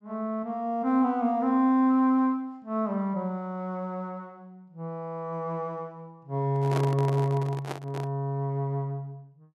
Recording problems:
handling noise; from 6.5 to 8 s; peak 0 dB vs average level

